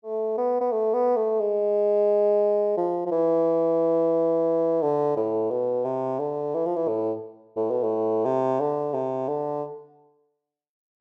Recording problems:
none

